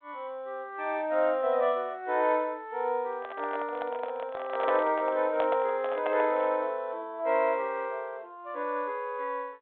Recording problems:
telephone audio; 280 Hz to 3.7 kHz, G.726
microphone handling noise; from 3 to 6.5 s; peak +1 dB vs average level

